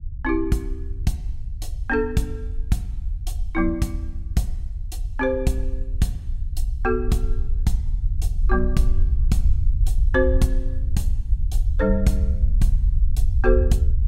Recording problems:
rumble; below 62 Hz, SNR 0 dB

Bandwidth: 16 kHz